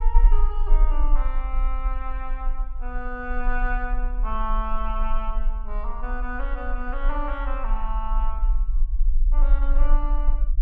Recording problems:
low-frequency rumble; below 38 Hz, strongest tone 22 Hz, SNR -6 dB

